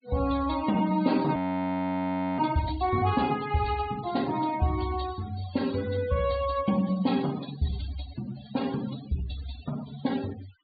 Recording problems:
treble missing; nothing above 4.6 kHz
denoising artefacts; signal-to-artefact ratio 15 dB
audio freezing; at 1.5 s for 1 s

